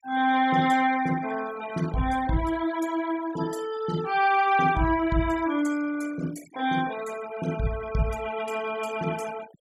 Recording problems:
denoising artefacts; signal-to-artefact ratio 17 dB

